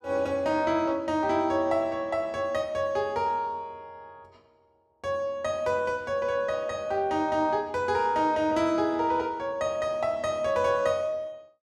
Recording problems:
none

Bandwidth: 13.5 kHz